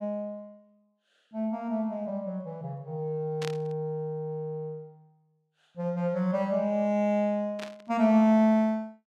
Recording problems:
burst of static; at 3.5 s and at 7.5 s; peak -6 dB vs average level

